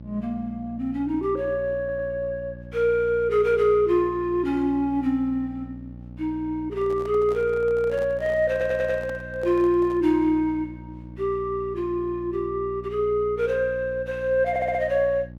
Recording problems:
hum; 60 Hz, harmonics up to 600 Hz, SNR 16 dB
audio stuttering; at 2 s, at 8.5 s and at 15 s
microphone handling noise; from 6.5 to 10 s; peak -11 dB vs average level

